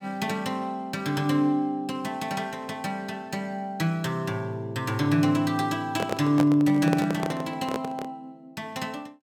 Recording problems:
handling noise; from 6 to 8 s; peak +3 dB vs average level

